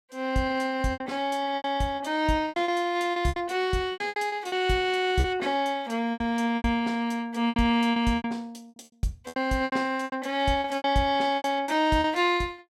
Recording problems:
packet loss; 13% of the sound replaced, filled with repeated pitch periods

